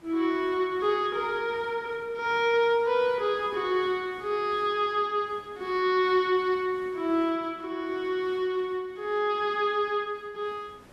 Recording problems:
background hiss; slope -6 dB per octave, SNR 26 dB

